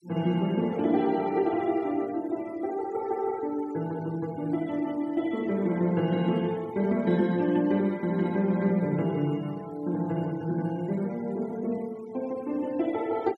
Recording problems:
denoising artefacts; signal-to-artefact ratio 24 dB

